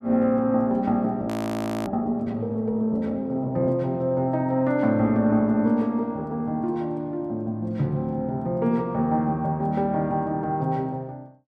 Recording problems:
audio freezing; at 1.5 s for 0.5 s

